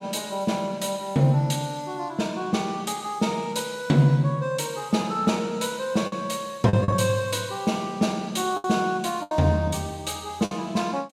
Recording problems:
lost packets; 3% of the sound replaced, filled with the last packet

